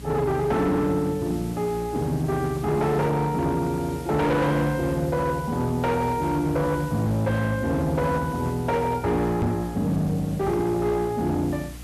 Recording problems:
distorted audio; hard clipping, uneven, signal-to-distortion ratio 11 dB
hum; 60 Hz, harmonics up to 300 Hz, SNR 18 dB
hiss; slope -2 dB per octave, SNR 21 dB
knock on the microphone; at 9.5 s; peak +4 dB vs average level

